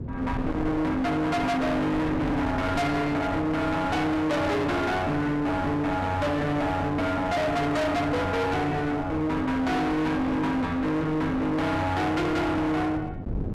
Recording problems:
distorted audio; hard clipping, uneven, signal-to-distortion ratio 5 dB
wind noise; below 370 Hz, SNR 11 dB

